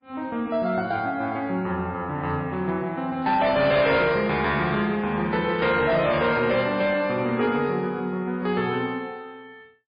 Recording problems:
lossy codec; MP3, log-spectral distance 2 dB, nothing above 4.2 kHz
distorted audio; hard clipping, signal-to-distortion ratio 12 dB

